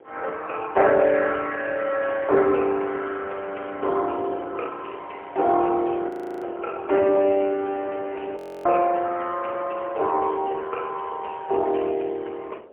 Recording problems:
phone line; 320 Hz to 3.1 kHz, AMR-NB, then MP3
wind on the microphone; below 630 Hz, SNR 21 dB
audio freezing; at 6 s and at 8.5 s

